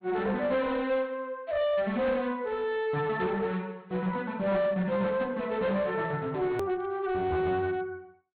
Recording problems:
low-pass filter; nothing above 4.3 kHz
distortion; hard clipping, uneven, signal-to-distortion ratio 11 dB
edit click; at 6.5 s

